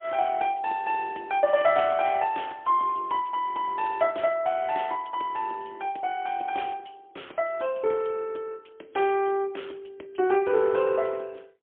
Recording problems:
telephone audio; 280 Hz to 3.3 kHz, AMR-NB, then MP3

